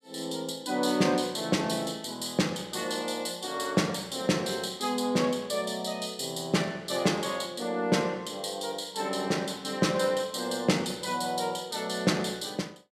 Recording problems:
none

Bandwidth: 14.5 kHz